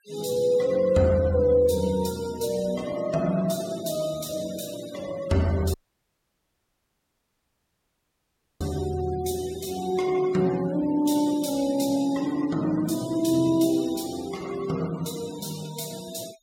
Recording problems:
noise reduction artefacts; signal-to-artefact ratio 19 dB
audio cutting out; at 5.5 s for 3 s

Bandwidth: 16.5 kHz